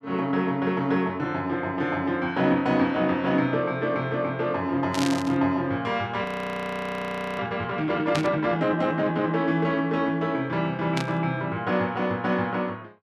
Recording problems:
burst of static; at 5 s, at 8 s and at 11 s; peak +1 dB vs average level
frozen audio; at 6 s for 1 s

